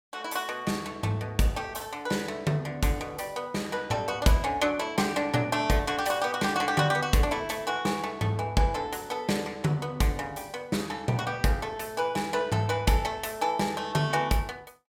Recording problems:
none

